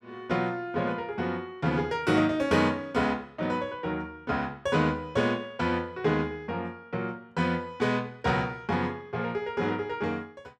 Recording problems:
none

